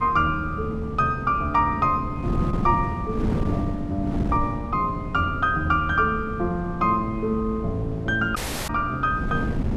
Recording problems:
wind noise; below 250 Hz, SNR 6 dB
audio cutting out; at 8.5 s

